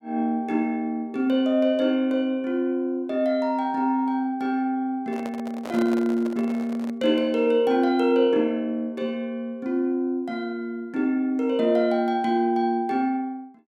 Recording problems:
handling noise; from 5 to 7 s; peak -7 dB vs average level

